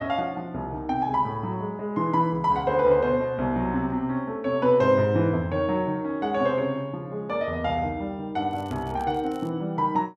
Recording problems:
crackling; at 8.5 s; loose cable, SNR 30 dB

